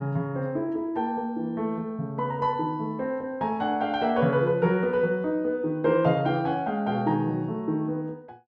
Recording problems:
none

